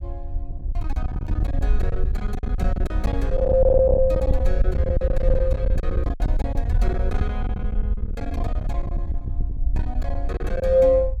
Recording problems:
rumble; below 66 Hz, SNR 1 dB
packet loss; 19% of the sound replaced, filled with silence

